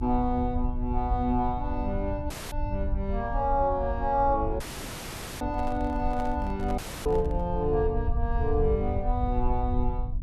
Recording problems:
hum; 50 Hz, harmonics up to 300 Hz, SNR 17 dB
low-frequency rumble; below 74 Hz, SNR 4 dB
audio cutting out; at 2.5 s, at 4.5 s for 1 s and at 7 s
handling noise; from 5.5 to 7.5 s; peak -7 dB vs average level

